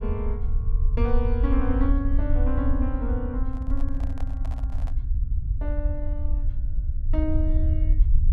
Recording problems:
low-frequency rumble; below 66 Hz, SNR -5 dB
handling noise; from 3.5 to 5 s; peak -8 dB vs average level

